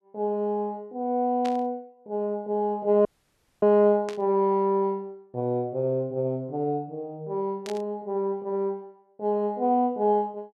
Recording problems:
burst of static; at 1.5 s, at 4 s and at 7.5 s; peak -9 dB vs average level
audio cutting out; at 3 s for 0.5 s

